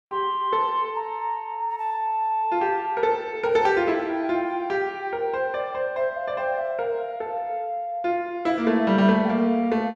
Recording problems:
none

